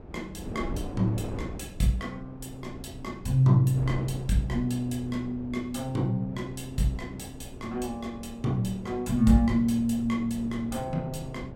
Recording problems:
wind noise; below 360 Hz, SNR 14 dB

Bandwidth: 16.5 kHz